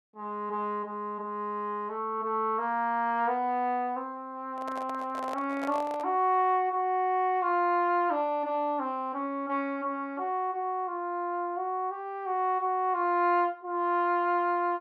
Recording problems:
handling noise; from 4.5 to 6 s; peak -6 dB vs average level

